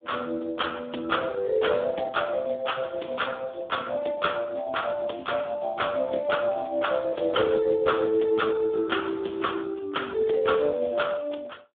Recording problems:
phone line; 260 Hz to 3.6 kHz, Speex

